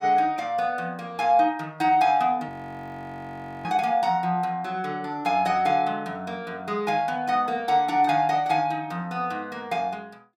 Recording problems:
audio freezing; at 2.5 s for 1 s

